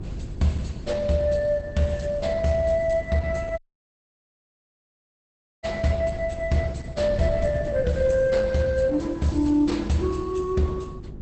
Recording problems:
lossy compression; Opus, log-spectral distance 3 dB, nothing above 8.2 kHz
hum; 50 Hz, harmonics up to 400 Hz, SNR 17 dB
wind on the microphone; below 160 Hz, SNR 14 dB
audio cutting out; at 3.5 s for 2 s

